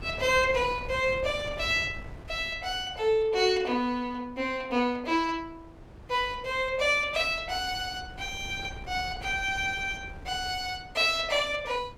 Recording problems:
wind noise; below 350 Hz, SNR 18 dB

